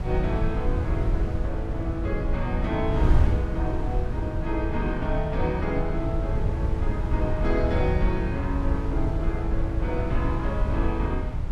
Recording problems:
wind on the microphone; below 90 Hz, SNR -2 dB

